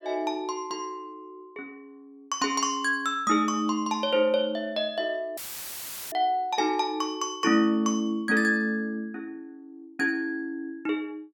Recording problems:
dropout; at 5.5 s for 1 s; filled with static

